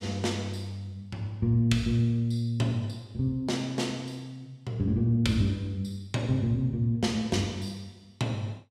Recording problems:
none

